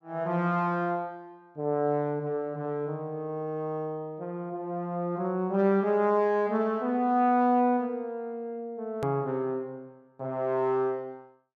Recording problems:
click at an edit; at 9 s

